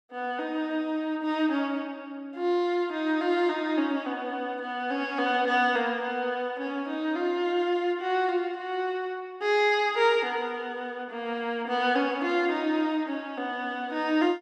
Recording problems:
none

